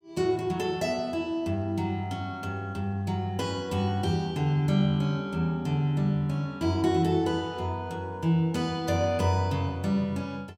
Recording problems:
none

